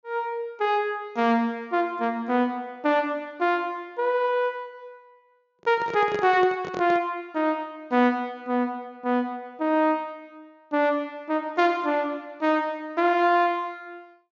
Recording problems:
low-pass filter; nothing above 6.9 kHz
microphone handling noise; from 5.5 to 7 s; peak -4 dB vs average level

